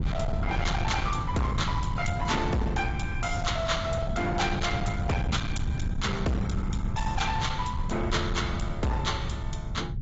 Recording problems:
treble missing; nothing above 7.6 kHz
lossy codec; AAC, log-spectral distance 2 dB
distorted audio; hard clipping, signal-to-distortion ratio 8 dB
rumble; below 150 Hz, SNR 3 dB

